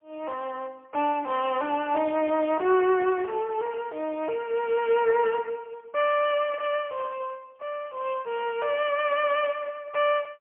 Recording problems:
phone line; 320 Hz to 3.3 kHz, AMR-NB, then MP3

